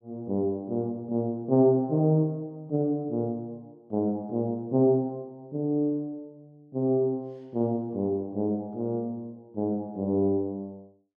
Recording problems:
none

